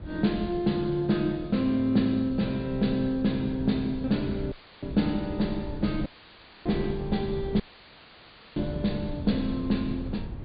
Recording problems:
treble missing; nothing above 4.7 kHz
wind on the microphone; below 140 Hz, SNR 13 dB
dropout; at 4.5 s, at 6 s for 0.5 s and at 7.5 s for 1 s; filled with static

